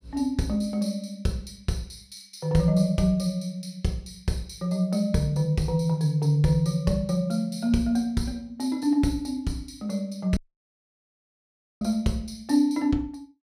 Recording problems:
dropout; at 10 s for 1.5 s

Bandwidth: 15.5 kHz